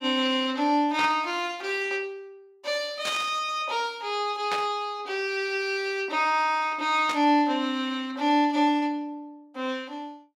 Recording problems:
burst of static; 4 times, first at 1 s; peak -2 dB vs average level

